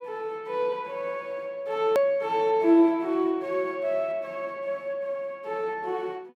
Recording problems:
hard cut with a click; at 2 s

